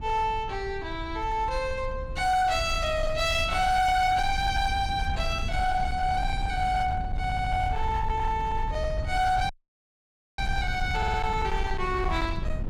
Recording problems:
distorted audio; hard clipping, uneven, signal-to-distortion ratio 11 dB
rumble; below 90 Hz, SNR 7 dB
audio stuttering; at 7 s and at 11 s
audio cutting out; at 9.5 s for 1 s

